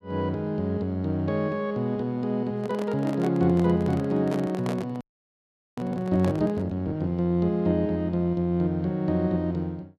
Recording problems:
handling noise; from 2.5 to 6.5 s; peak -4 dB vs average level
frozen audio; at 5 s for 1 s

